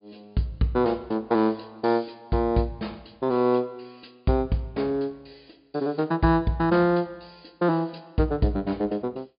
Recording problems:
treble cut off; nothing above 5 kHz

